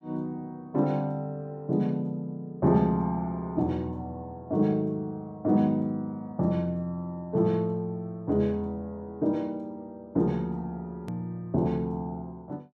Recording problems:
click at an edit; at 11 s

